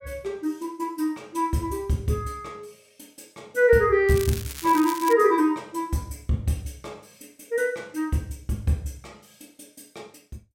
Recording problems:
crackle; from 4 to 5 s; loose cable, SNR 12 dB

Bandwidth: 16.5 kHz